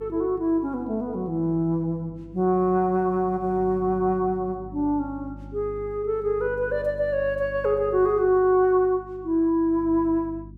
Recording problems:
hum; 50 Hz, harmonics up to 350 Hz, SNR 19 dB

